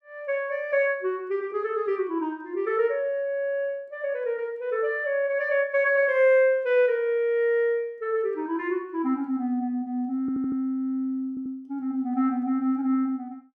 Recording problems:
stutter; at 10 s and at 11 s

